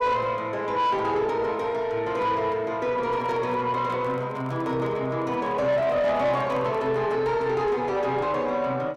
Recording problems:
distortion; soft clipping, signal-to-distortion ratio 12 dB
microphone handling noise; from 3 to 7 s; peak -10 dB vs average level

